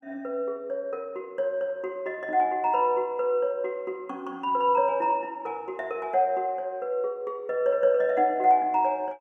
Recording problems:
none

